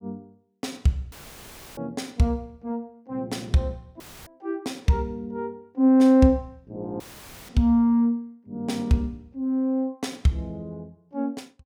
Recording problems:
dropout; at 1 s for 0.5 s, at 4 s and at 7 s; filled with static

